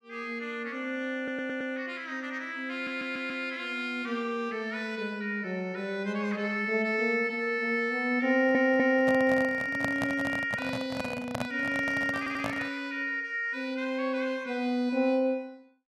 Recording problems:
audio stuttering; 4 times, first at 1 s
microphone handling noise; from 8.5 to 13 s; peak +1 dB vs average level

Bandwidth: 13 kHz